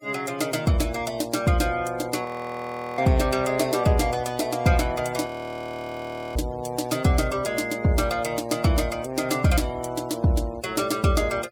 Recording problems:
denoising artefacts; signal-to-artefact ratio 22 dB
frozen audio; at 2.5 s for 0.5 s and at 5.5 s for 1 s

